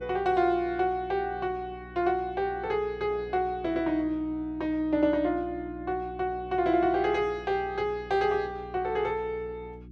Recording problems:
electrical hum; 60 Hz, harmonics up to 360 Hz, SNR 18 dB

